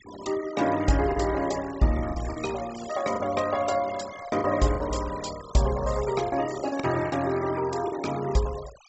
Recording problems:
treble cut off; nothing above 7.9 kHz
denoising artefacts; signal-to-artefact ratio 15 dB
packet loss; 6% of the sound replaced, filled with the last packet

